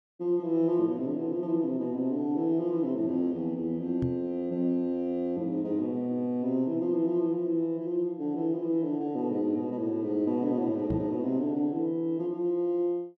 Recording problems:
microphone bump; at 4 s and at 11 s; peak 0 dB vs average level

